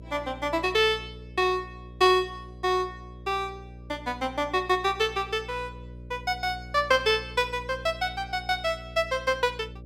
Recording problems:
hum; 60 Hz, harmonics up to 600 Hz, SNR 17 dB

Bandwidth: 16 kHz